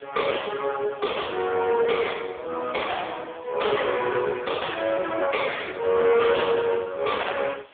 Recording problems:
telephone audio; 320 Hz to 3.5 kHz, AMR-NB
distortion; hard clipping, signal-to-distortion ratio 6 dB
hiss; SNR 27 dB

